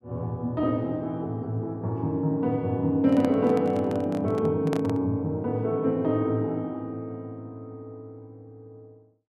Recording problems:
handling noise; from 3 to 5 s; peak -2 dB vs average level

